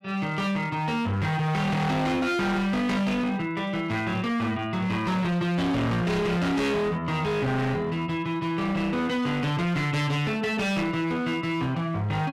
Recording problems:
distortion; hard clipping, signal-to-distortion ratio 6 dB

